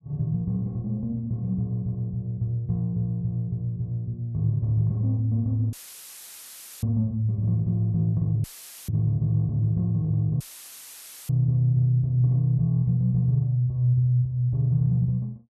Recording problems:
dropout; at 5.5 s for 1 s, at 8.5 s and at 10 s for 1 s; filled with static

